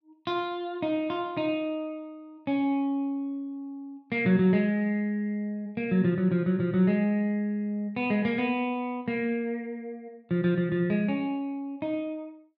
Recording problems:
none

